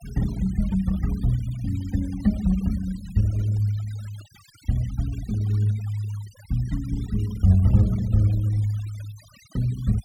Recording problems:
noise reduction artefacts; signal-to-artefact ratio 23 dB

